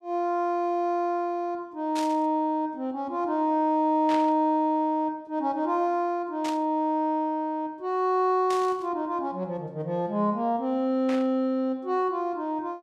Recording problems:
burst of static; 5 times, first at 2 s; peak -7 dB vs average level

